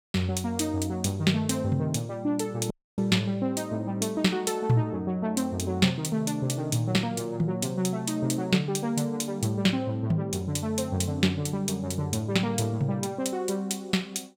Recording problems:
dropout; at 2.5 s

